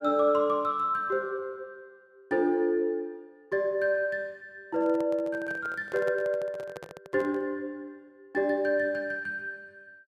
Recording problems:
microphone handling noise; from 4.5 to 7.5 s; peak -7 dB vs average level

